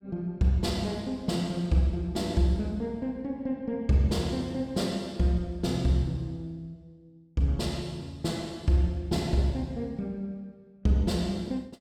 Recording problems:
none

